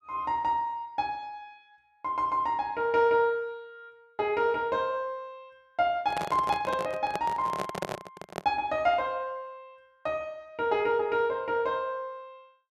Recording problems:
handling noise; from 6 to 8.5 s; peak 0 dB vs average level

